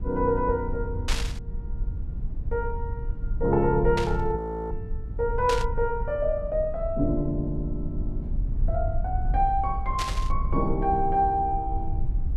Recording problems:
low-frequency rumble; below 66 Hz, SNR 5 dB
static burst; 4 times, first at 1 s; peak +1 dB vs average level
frozen audio; at 4.5 s

